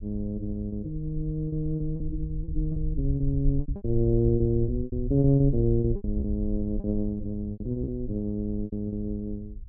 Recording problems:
rumble; below 60 Hz, SNR 7 dB
lost packets; 12% of the sound replaced, filled with repeated pitch periods

